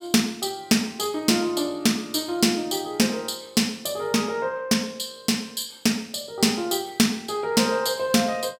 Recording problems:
none

